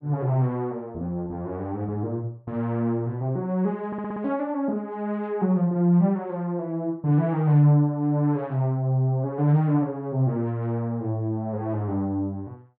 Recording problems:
audio stuttering; at 4 s

